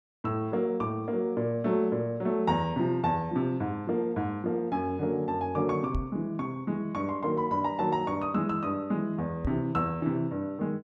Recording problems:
microphone bump; at 6 s and at 9.5 s; peak +2 dB vs average level

